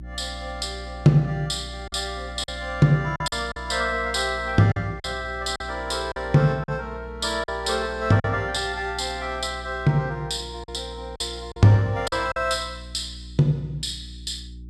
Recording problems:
mains hum; 60 Hz, harmonics up to 360 Hz, SNR 15 dB
packet loss; 5% of the sound replaced, filled with silence

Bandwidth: 13 kHz